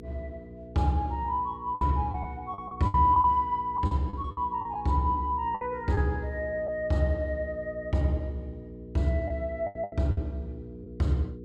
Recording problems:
mains hum; 60 Hz, harmonics up to 480 Hz, SNR 16 dB
packet loss; 7% of the sound replaced, filled with the last packet

